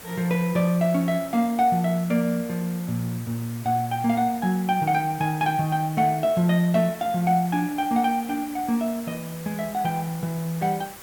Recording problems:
background hiss; slope -3 dB per octave, SNR 17 dB

